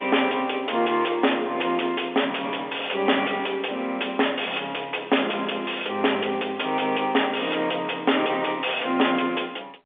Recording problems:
telephone audio; 300 Hz to 3.5 kHz, G.711
distortion; soft clipping, signal-to-distortion ratio 8 dB

